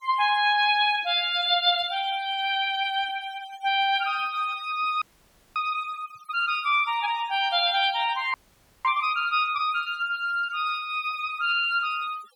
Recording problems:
denoising artefacts; signal-to-artefact ratio 21 dB
frozen audio; at 5 s for 0.5 s and at 8.5 s for 0.5 s

